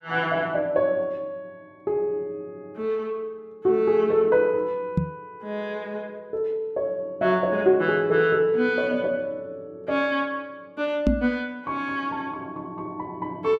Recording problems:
microphone thump; at 5 s and at 11 s; peak +7 dB vs average level

